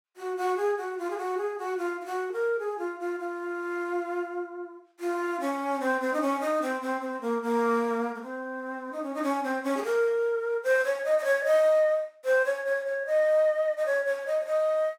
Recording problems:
none

